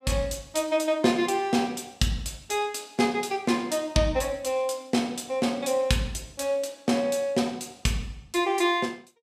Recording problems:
none

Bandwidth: 14.5 kHz